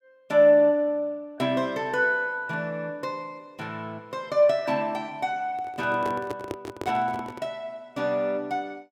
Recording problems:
microphone handling noise; from 5.5 to 7.5 s; peak -3 dB vs average level

